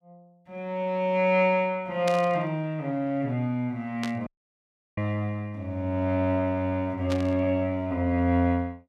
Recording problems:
static burst; at 2 s, at 4 s and at 7 s; peak -3 dB vs average level
dropout; at 4.5 s for 0.5 s

